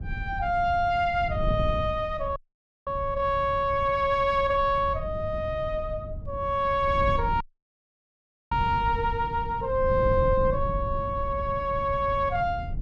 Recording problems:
wind noise; below 130 Hz, SNR 9 dB
audio cutting out; at 2.5 s for 0.5 s and at 7.5 s for 1 s

